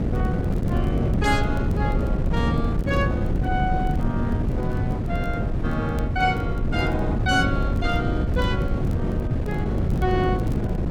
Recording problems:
wind on the microphone; below 220 Hz, SNR -3 dB
crackling; vinyl, SNR 28 dB

